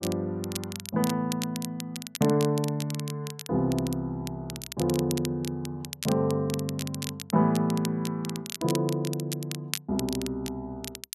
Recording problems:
crackle; vinyl, SNR 9 dB

